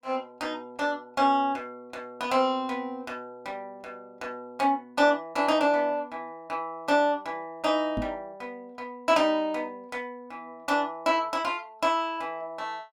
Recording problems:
microphone bump; at 8 s; peak -1 dB vs average level

